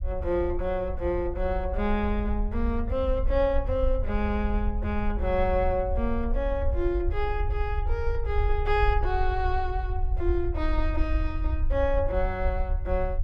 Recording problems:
rumble; below 64 Hz, SNR 2 dB

